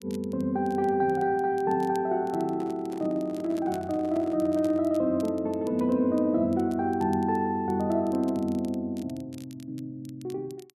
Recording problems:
crackle; vinyl, SNR 27 dB
handling noise; from 2.5 to 5 s; peak -10 dB vs average level

